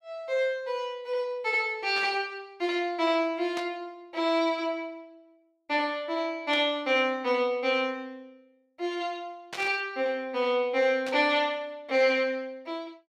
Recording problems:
burst of static; 5 times, first at 2 s; peak -5 dB vs average level

